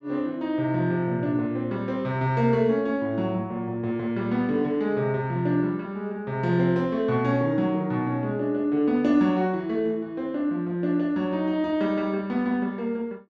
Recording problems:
none

